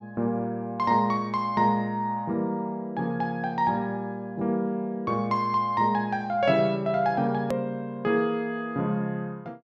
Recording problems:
edit click; at 7.5 s

